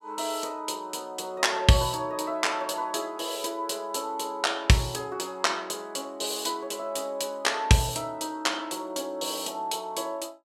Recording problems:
none

